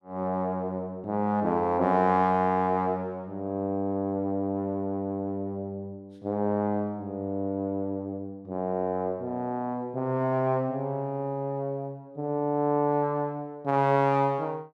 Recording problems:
none

